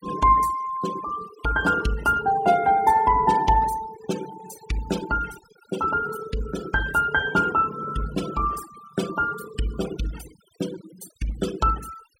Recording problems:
denoising artefacts; signal-to-artefact ratio 15 dB

